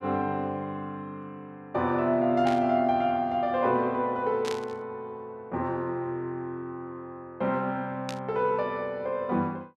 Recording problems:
static burst; at 2.5 s, at 4.5 s and at 8 s; peak -4 dB vs average level

